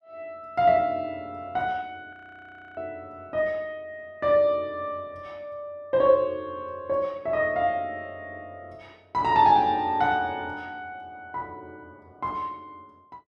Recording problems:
audio freezing; at 2 s for 0.5 s

